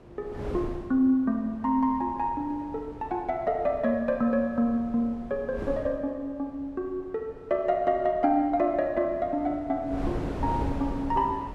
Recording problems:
wind on the microphone; below 450 Hz, SNR 12 dB

